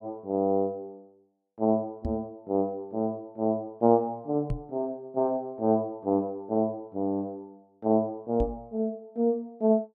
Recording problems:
microphone thump; at 2 s, at 4.5 s and at 8.5 s; peak 0 dB vs average level

